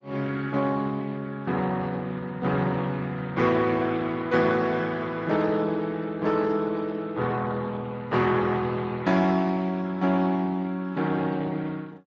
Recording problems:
lossy compression; Speex, log-spectral distance 4 dB

